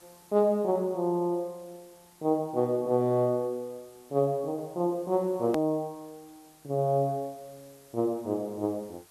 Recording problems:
hiss; slope -2 dB per octave, SNR 27 dB
edit click; at 5.5 s

